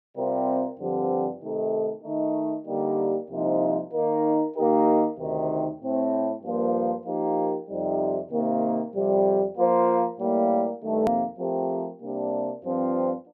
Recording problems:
hard cut with a click; at 11 s

